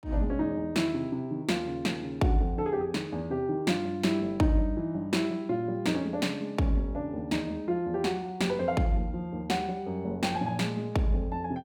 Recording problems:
none

